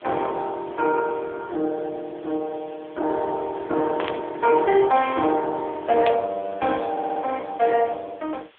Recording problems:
phone line; 280 Hz to 2.3 kHz, AMR-NB
hiss; SNR 29 dB
burst of static; at 4 s and at 6 s; peak -4 dB vs average level
audio stuttering; at 7 s

